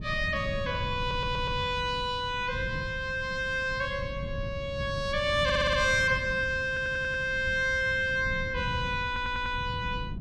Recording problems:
wind on the microphone; below 160 Hz, SNR 10 dB
stutter; 4 times, first at 1 s

